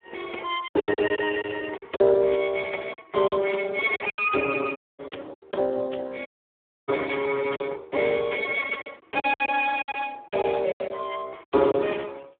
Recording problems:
phone line; 280 Hz to 2.8 kHz, Speex
lost packets; 10% of the sound replaced, filled with silence
dropout; at 5 s and at 6.5 s for 0.5 s

